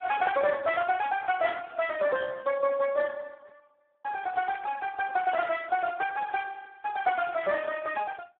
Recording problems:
telephone audio; 170 Hz to 3.7 kHz, Speex

